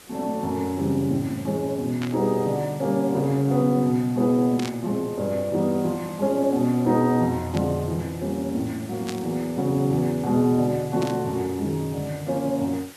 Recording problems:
hiss; slope -2 dB per octave, SNR 20 dB
static burst; 5 times, first at 2 s; peak -6 dB vs average level

